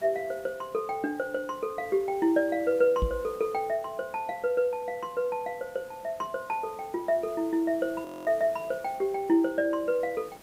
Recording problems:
background hiss; slope -5 dB per octave, SNR 22 dB
microphone thump; at 3 s; peak +3 dB vs average level
audio freezing; at 8 s

